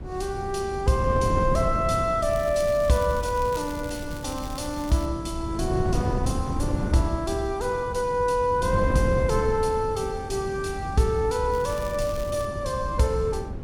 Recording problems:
wind on the microphone; below 200 Hz, SNR 6 dB
crackle; from 2.5 to 5 s and at 12 s; loose cable, SNR 19 dB

